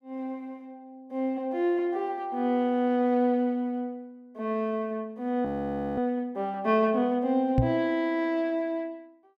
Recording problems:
frozen audio; at 5.5 s for 0.5 s
microphone thump; at 7.5 s; peak +7 dB vs average level

